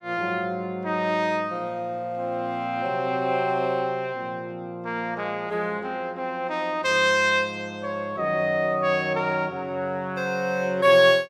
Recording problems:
none

